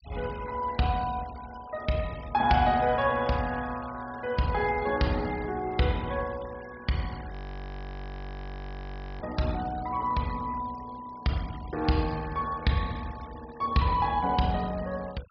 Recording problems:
treble cut off; nothing above 5.5 kHz
denoising artefacts; signal-to-artefact ratio 20 dB
audio freezing; at 7.5 s for 2 s

